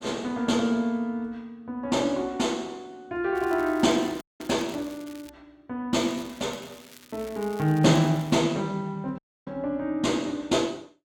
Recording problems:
crackle; from 3.5 to 5.5 s and from 6 to 8.5 s; loose cable, SNR 22 dB
audio cutting out; at 4 s and at 9 s

